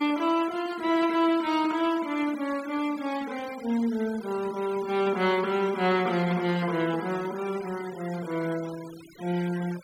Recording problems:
noise reduction artefacts; signal-to-artefact ratio 17 dB

